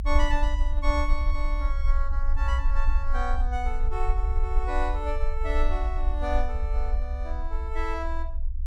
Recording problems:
rumble; below 54 Hz, strongest tone 20 Hz, SNR -4 dB

